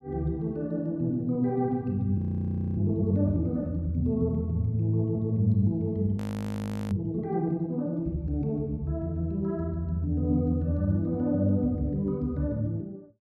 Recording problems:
audio freezing; at 2 s for 0.5 s and at 6 s for 0.5 s

